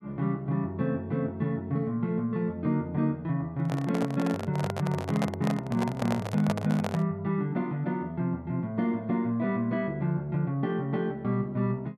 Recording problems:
microphone handling noise; from 3.5 to 7 s; peak +2 dB vs average level

